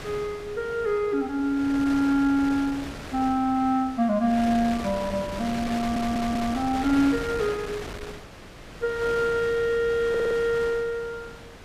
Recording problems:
wind noise; below 2.2 kHz, SNR 12 dB
audio stuttering; at 6 s and at 10 s

